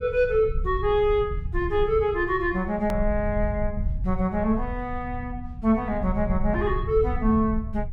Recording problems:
rumble; below 78 Hz, SNR 7 dB
edit click; at 3 s

